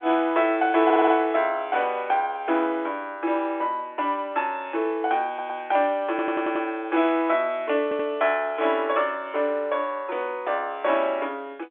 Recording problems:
telephone audio; 280 Hz to 3.6 kHz, G.711
audio stuttering; 4 times, first at 1 s

